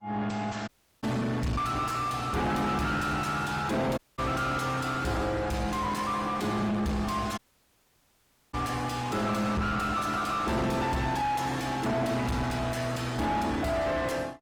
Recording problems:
codec artefacts; Opus, log-spectral distance 4 dB, nothing above 19.5 kHz
distorted audio; soft clipping, signal-to-distortion ratio 6 dB
dropout; at 0.5 s, at 4 s and at 7.5 s for 1 s

